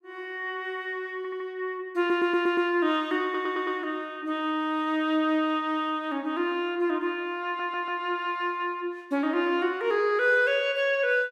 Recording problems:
audio stuttering; 4 times, first at 1 s

